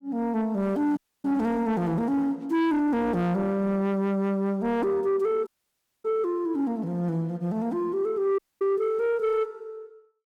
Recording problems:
distorted audio; soft clipping, signal-to-distortion ratio 12 dB
dropout; at 1 s, at 5.5 s for 0.5 s and at 8.5 s

